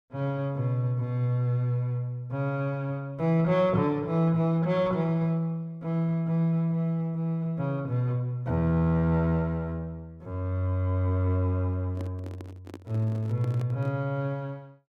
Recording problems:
microphone handling noise; from 12 to 14 s; peak -10 dB vs average level

